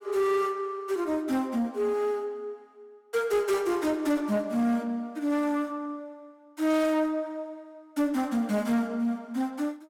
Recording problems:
distorted audio; soft clipping, signal-to-distortion ratio 10 dB

